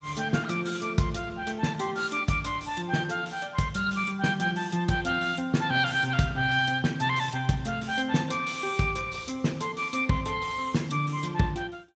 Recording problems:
lossy codec; Speex, log-spectral distance 5 dB, nothing above 7.6 kHz

